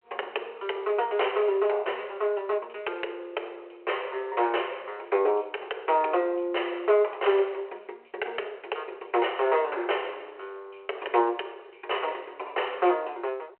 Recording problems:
telephone audio; 370 Hz to 3.3 kHz, G.726

